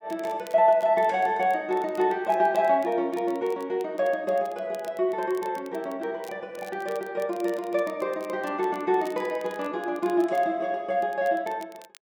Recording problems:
crackle; vinyl, SNR 26 dB

